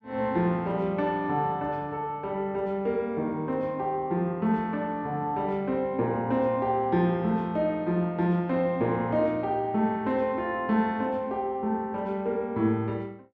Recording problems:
none

